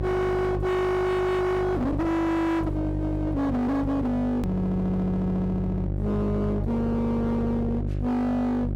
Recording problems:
distorted audio; hard clipping, uneven, signal-to-distortion ratio 6 dB
electrical hum; 50 Hz, harmonics up to 1.1 kHz, SNR 4 dB
edit click; at 4.5 s

